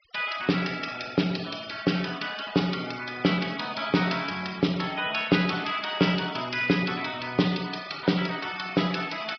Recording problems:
low-pass filter; nothing above 5.5 kHz
noise reduction artefacts; signal-to-artefact ratio 17 dB

